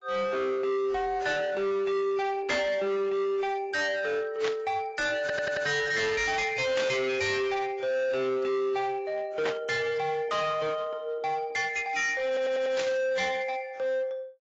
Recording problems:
lossy codec; AAC, log-spectral distance 2 dB, nothing above 7.3 kHz
distortion; hard clipping, signal-to-distortion ratio 8 dB
burst of static; 5 times, first at 2.5 s; peak -1 dB vs average level
audio stuttering; at 5 s and at 12 s

